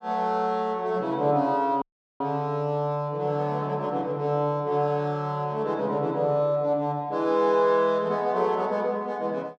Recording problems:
dropout; at 2 s

